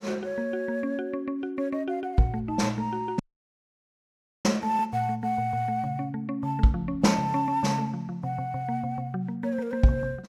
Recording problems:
dropout; at 3 s for 1.5 s

